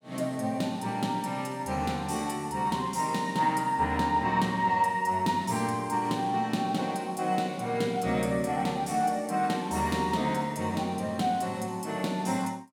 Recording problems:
none

